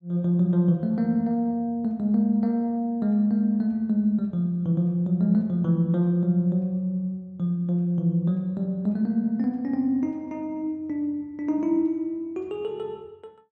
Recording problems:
none

